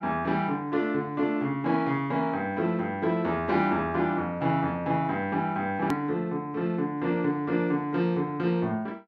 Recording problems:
hard cut with a click; at 6 s

